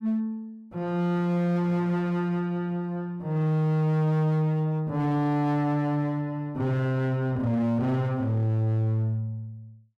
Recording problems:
distortion; hard clipping, uneven, signal-to-distortion ratio 11 dB

